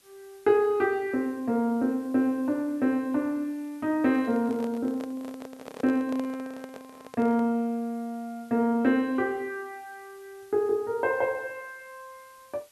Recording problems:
background hiss; slope 0 dB per octave, SNR 30 dB
microphone handling noise; from 4 to 7.5 s; peak -8 dB vs average level

